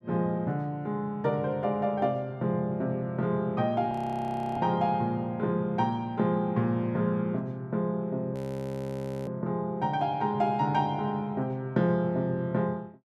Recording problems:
frozen audio; at 4 s for 0.5 s and at 8.5 s for 1 s

